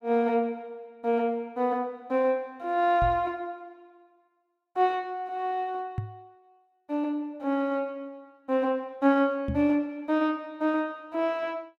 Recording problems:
microphone thump; at 3 s, at 6 s and at 9.5 s; peak 0 dB vs average level

